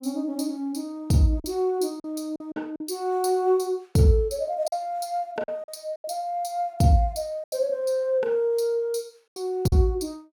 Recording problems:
lost packets; 6% of the sound replaced, filled with silence

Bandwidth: 18 kHz